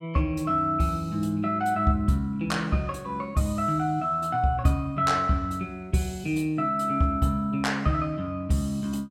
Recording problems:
none

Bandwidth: 16 kHz